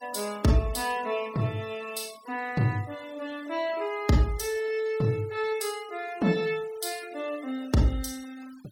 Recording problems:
noise reduction artefacts; signal-to-artefact ratio 21 dB

